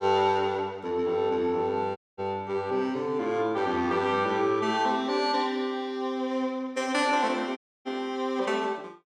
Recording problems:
audio cutting out; at 2 s and at 7.5 s

